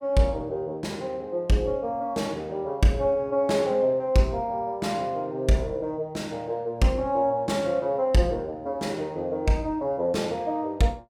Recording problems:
none

